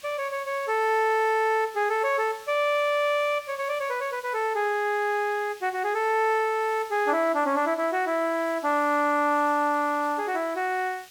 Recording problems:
hiss; SNR 22 dB

